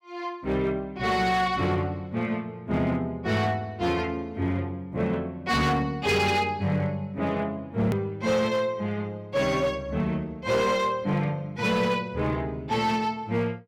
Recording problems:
distorted audio; hard clipping, signal-to-distortion ratio 12 dB
click at an edit; at 8 s

